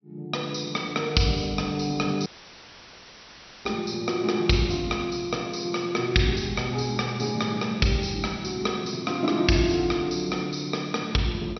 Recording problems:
treble missing; nothing above 6 kHz
audio cutting out; at 2.5 s for 1.5 s; filled with static

